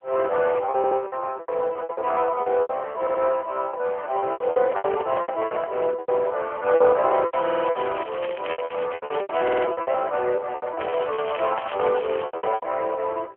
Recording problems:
phone line; 370 Hz to 2.6 kHz, AMR-NB
lost packets; 19% of the sound replaced, filled with repeated pitch periods
stutter; 4 times, first at 1 s
microphone handling noise; from 4.5 to 5.5 s; peak -3 dB vs average level
crackling; from 7 to 9.5 s and from 11 to 13 s; loose cable, SNR 15 dB

